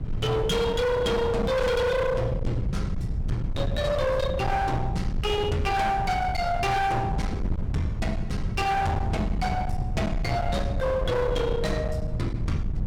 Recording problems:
distortion; hard clipping, uneven, signal-to-distortion ratio 7 dB
rumble; below 150 Hz, SNR 5 dB
wind noise; below 210 Hz, SNR 10 dB

